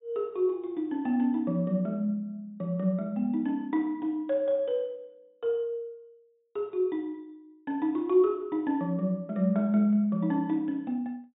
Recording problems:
low-pass filter; nothing above 4 kHz

